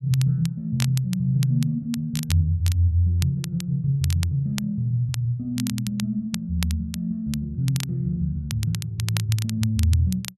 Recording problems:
crackle; vinyl, SNR 13 dB

